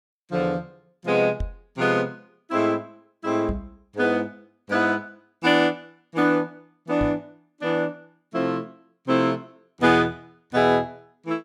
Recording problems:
knock on the microphone; at 1.5 s, at 3.5 s and at 7 s; peak -1 dB vs average level

